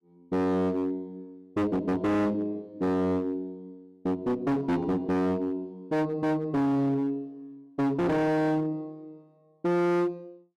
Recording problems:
distorted audio; hard clipping, uneven, signal-to-distortion ratio 6 dB

